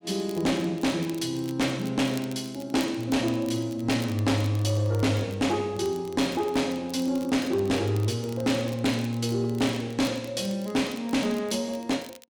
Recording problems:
distorted audio; soft clipping, signal-to-distortion ratio 11 dB
crackling; vinyl, SNR 21 dB

